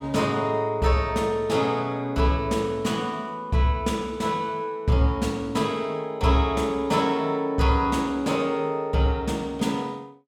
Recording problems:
none

